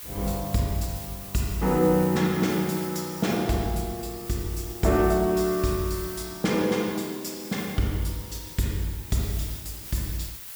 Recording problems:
background hiss; slope +1 dB per octave, SNR 12 dB

